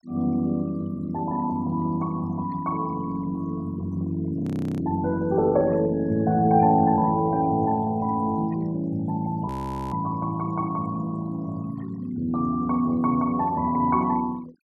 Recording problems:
denoising artefacts; signal-to-artefact ratio 25 dB
audio freezing; at 4.5 s and at 9.5 s

